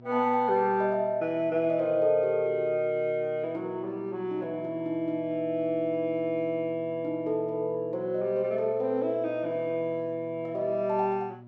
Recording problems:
hum; 60 Hz, harmonics up to 960 Hz, SNR 21 dB

